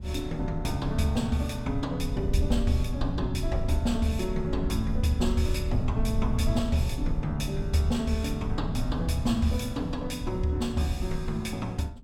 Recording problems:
rumble; below 78 Hz, SNR 5 dB

